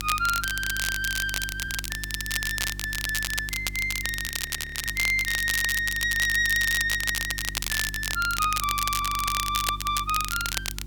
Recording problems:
hum; 50 Hz, harmonics up to 350 Hz, SNR 13 dB
background hiss; slope -2 dB per octave, SNR 29 dB
crackle; vinyl, SNR 3 dB
stutter; 4 times, first at 0.5 s
frozen audio; at 4.5 s for 0.5 s

